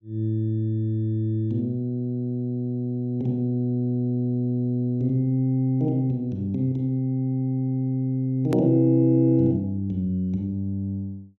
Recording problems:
hard cut with a click; at 8.5 s

